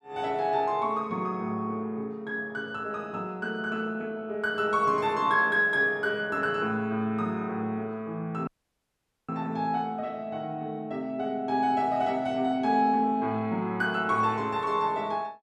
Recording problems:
dropout; at 8.5 s for 1 s

